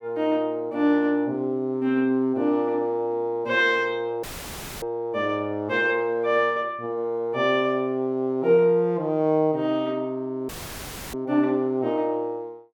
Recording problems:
dropout; at 4 s for 0.5 s and at 10 s for 0.5 s; filled with static

